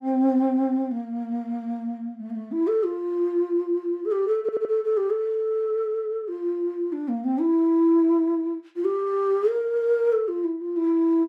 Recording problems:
audio stuttering; at 4.5 s

